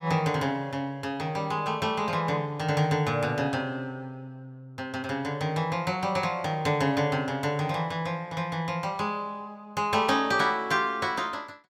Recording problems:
none

